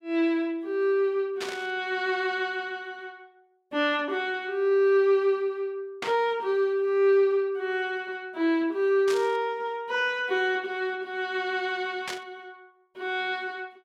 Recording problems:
static burst; 4 times, first at 1.5 s; peak -2 dB vs average level

